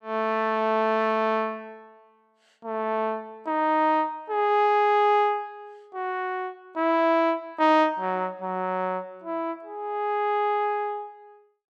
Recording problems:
none

